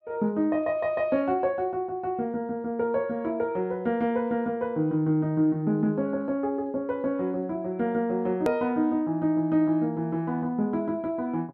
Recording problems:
click at an edit; at 8.5 s

